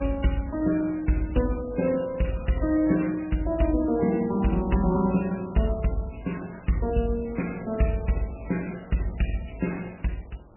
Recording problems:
lossy compression; MP3, log-spectral distance 6 dB, nothing above 2.9 kHz
wind on the microphone; below 660 Hz, SNR 23 dB

